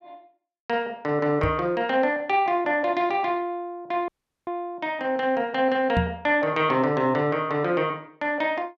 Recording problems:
microphone bump; at 1.5 s and at 6 s; peak +3 dB vs average level
audio cutting out; at 4 s

